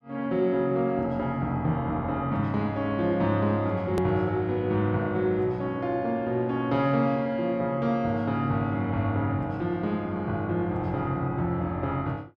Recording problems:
click at an edit; at 4 s

